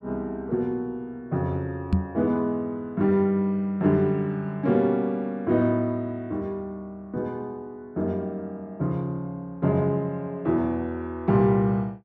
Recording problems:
microphone bump; at 2 s; peak +7 dB vs average level

